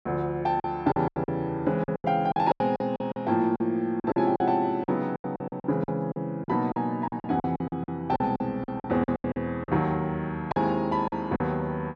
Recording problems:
lost packets; 15% of the sound replaced, filled with silence

